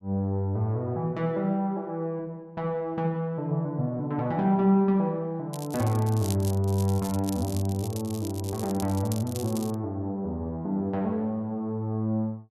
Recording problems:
crackle; from 5.5 to 10 s; loose cable, SNR 14 dB

